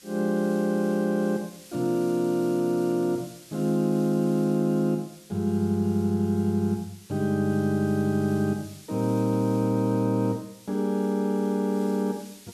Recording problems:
background hiss; SNR 23 dB

